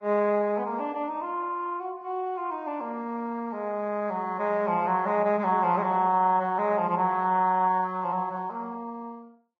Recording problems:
lossy codec; Vorbis, log-spectral distance 2 dB

